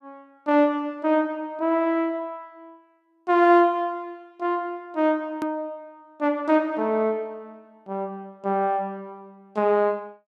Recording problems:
edit click; at 5.5 s

